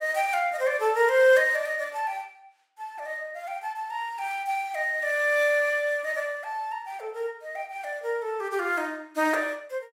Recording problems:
none

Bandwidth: 16 kHz